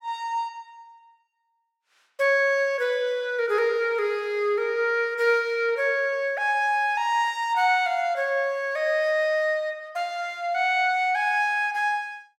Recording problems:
none

